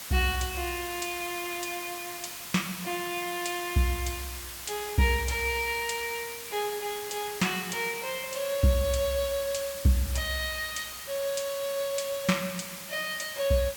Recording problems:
background hiss; slope +1 dB per octave, SNR 8 dB

